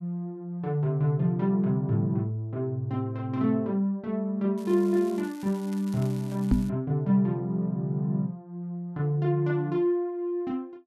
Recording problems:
crackle; from 4.5 to 6.5 s; loose cable, SNR 23 dB
microphone bump; at 6.5 s; peak +7 dB vs average level

